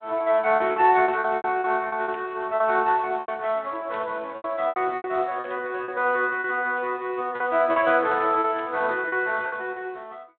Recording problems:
telephone audio; 280 Hz to 3.7 kHz, Speex
packet loss; 10% of the sound replaced, filled with repeated pitch periods
static burst; 4 times, first at 2 s; peak -14 dB vs average level

